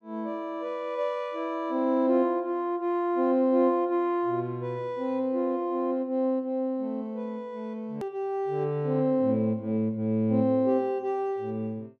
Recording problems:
click at an edit; at 8 s

